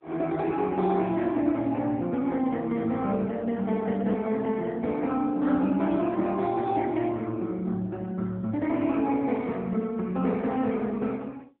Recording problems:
phone line; 130 Hz to 3.5 kHz, AMR-NB

